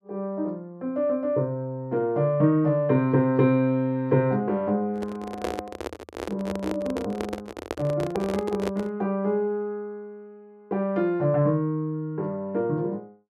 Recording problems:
handling noise; from 5 to 9 s; peak 0 dB vs average level

